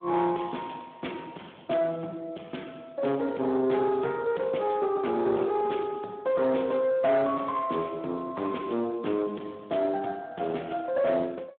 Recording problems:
telephone audio; 220 Hz to 3.4 kHz, Speex
distortion; soft clipping, signal-to-distortion ratio 11 dB

